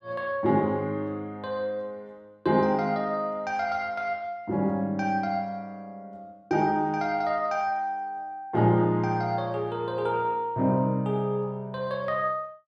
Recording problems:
none

